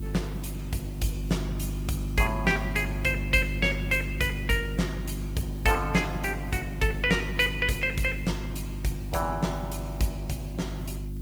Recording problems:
codec artefacts; Opus, log-spectral distance 2 dB, nothing above 19 kHz
hum; 50 Hz, harmonics up to 350 Hz, SNR 6 dB
hiss; SNR 24 dB

